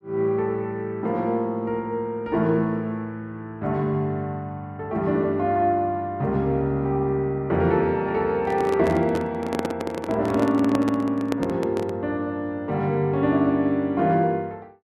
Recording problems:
microphone handling noise; from 8.5 to 12 s; peak +2 dB vs average level

